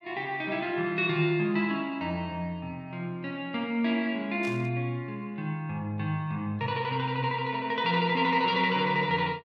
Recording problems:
burst of static; at 4.5 s; peak -13 dB vs average level

